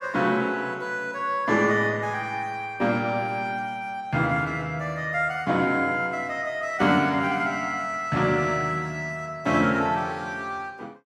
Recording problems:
none

